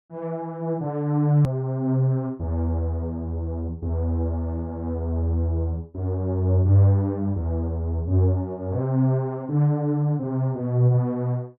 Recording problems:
edit click; at 1.5 s

